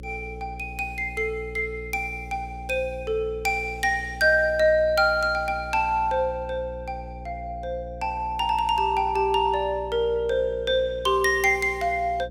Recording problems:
hum; 60 Hz, harmonics up to 540 Hz, SNR 16 dB

